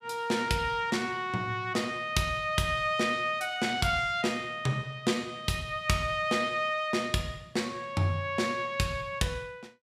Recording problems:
none

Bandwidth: 15.5 kHz